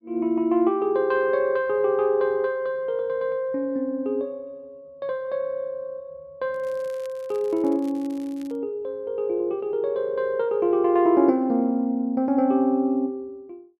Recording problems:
crackling; from 6.5 to 8.5 s; loose cable, SNR 29 dB

